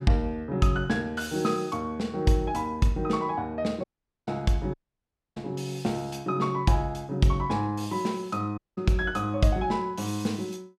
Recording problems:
dropout; at 4 s, at 4.5 s for 0.5 s and at 8.5 s

